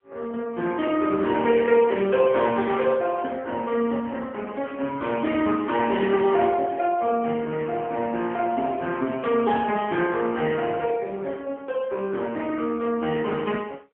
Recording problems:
phone line; 170 Hz to 3.3 kHz, AMR-NB, then MP3

